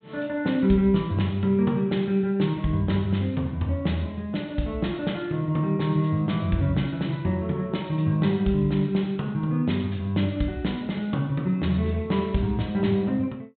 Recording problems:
treble missing; nothing above 4 kHz

